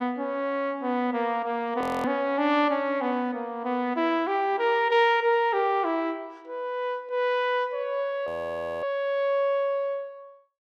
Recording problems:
frozen audio; at 2 s and at 8.5 s for 0.5 s

